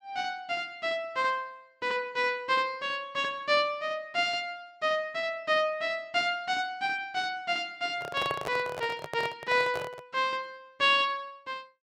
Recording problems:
handling noise; from 8 to 10 s; peak -1 dB vs average level

